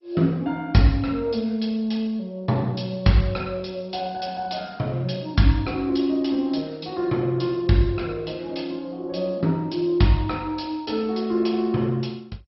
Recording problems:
codec artefacts; MP2, log-spectral distance 3 dB, nothing above 5.5 kHz

